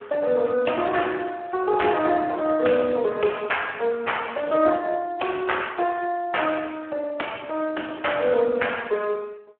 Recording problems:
phone line; 320 Hz to 3.2 kHz, Speex

